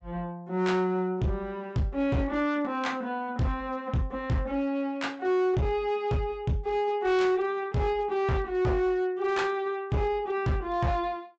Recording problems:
treble cut off; nothing above 8 kHz
distorted audio; hard clipping, signal-to-distortion ratio 10 dB

